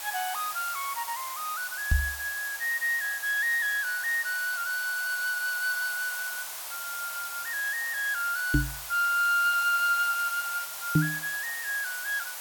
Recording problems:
hiss; SNR 7 dB
knock on the microphone; at 2 s, at 8.5 s and at 11 s; peak +9 dB vs average level

